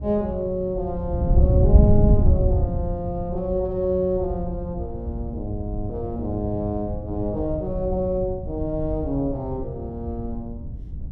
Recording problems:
wind noise; below 110 Hz, SNR 0 dB

